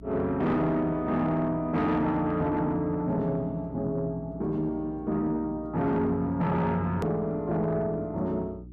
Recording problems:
distortion; soft clipping, signal-to-distortion ratio 11 dB
mains hum; 60 Hz, harmonics up to 360 Hz, SNR 19 dB
hard cut with a click; at 7 s

